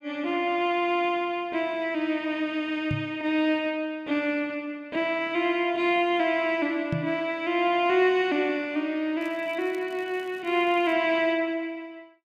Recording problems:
microphone thump; at 3 s and at 7 s; peak +1 dB vs average level
crackle; from 9 to 11 s; loose cable, SNR 29 dB

